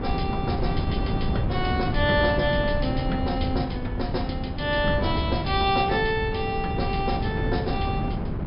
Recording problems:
treble missing; nothing above 5.5 kHz
wind on the microphone; below 230 Hz, SNR 2 dB

